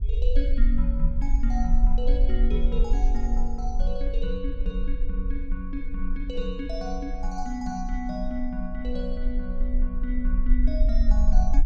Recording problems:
rumble; below 42 Hz, strongest tone 20 Hz, SNR -5 dB

